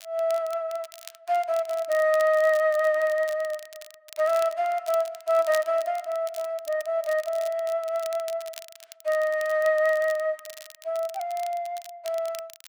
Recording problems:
crackle; vinyl, SNR 19 dB

